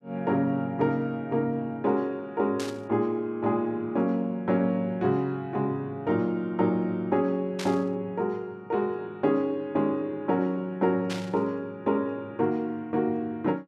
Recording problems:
static burst; at 2.5 s, at 7.5 s and at 11 s; peak -4 dB vs average level

